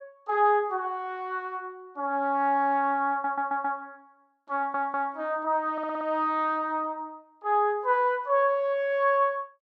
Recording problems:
stutter; at 3 s, at 4.5 s and at 5.5 s

